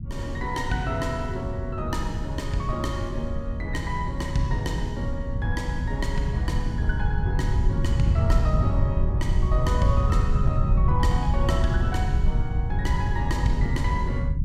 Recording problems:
low-frequency rumble; below 110 Hz, SNR -3 dB

